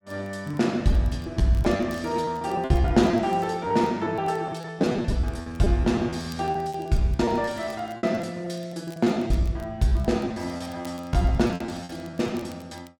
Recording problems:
crackling; vinyl, SNR 29 dB
lost packets; 16% of the sound replaced, filled with repeated pitch periods

